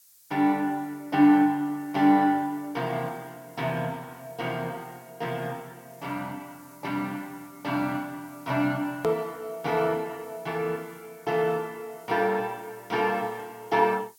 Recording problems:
codec artefacts; Vorbis, then MP2, log-spectral distance 2 dB, nothing above 16.6 kHz
hiss; SNR 26 dB
click at an edit; at 9 s

